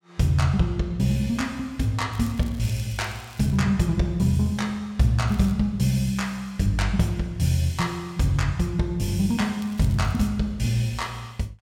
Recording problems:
crackling; from 2 to 3.5 s, at 5.5 s and at 9.5 s; loose cable, SNR 24 dB

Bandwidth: 16.5 kHz